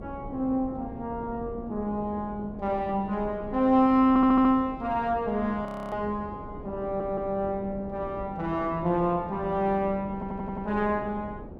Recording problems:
wind noise; below 390 Hz, SNR 14 dB
audio stuttering; at 4 s, at 7 s and at 10 s
frozen audio; at 5.5 s

